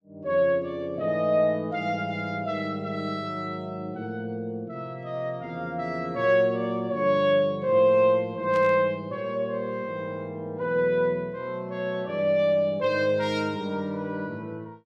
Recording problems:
static burst; at 8.5 s; peak -11 dB vs average level

